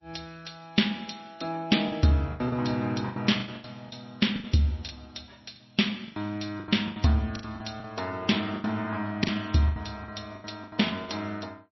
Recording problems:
lossy compression; MP3, log-spectral distance 5 dB, nothing above 5.7 kHz
lost packets; 13% of the sound replaced, filled with the last packet

